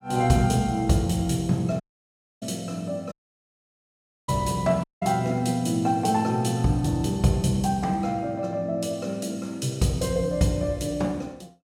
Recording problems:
audio cutting out; at 2 s for 0.5 s, at 3 s for 1 s and at 5 s

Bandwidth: 16 kHz